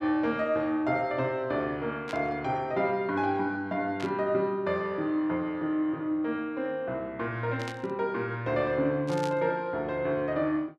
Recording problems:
burst of static; 4 times, first at 2 s; peak -6 dB vs average level

